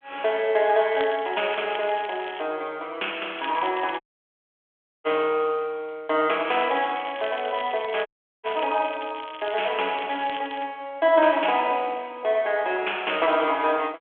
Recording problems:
telephone audio; 300 Hz to 3.4 kHz, G.726
crackling; from 1 to 2.5 s, at 3.5 s and from 6.5 to 11 s; loose cable, SNR 16 dB
audio cutting out; at 4 s for 1 s and at 8 s

